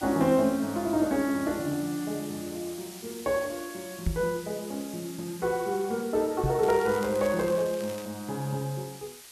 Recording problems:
hiss; slope +2 dB per octave, SNR 15 dB
knock on the microphone; at 4 s and at 6.5 s; peak +3 dB vs average level
crackle; from 6.5 to 8 s; loose cable, SNR 17 dB

